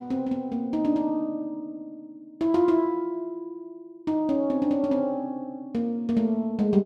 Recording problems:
none

